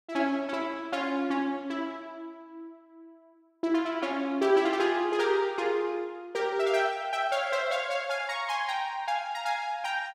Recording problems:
none

